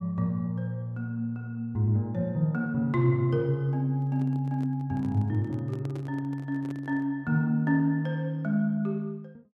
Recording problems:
handling noise; from 4 to 7 s; peak -10 dB vs average level

